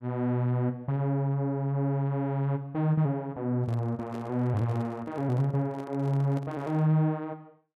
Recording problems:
microphone handling noise; from 3.5 to 7 s; peak -11 dB vs average level

